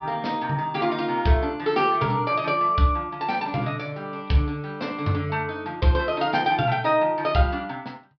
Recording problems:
treble missing; nothing above 5.5 kHz

